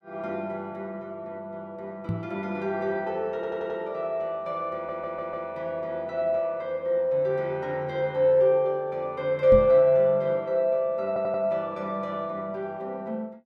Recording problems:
knock on the microphone; at 2 s and at 9.5 s; peak +1 dB vs average level
stutter; at 3.5 s, at 4.5 s and at 11 s

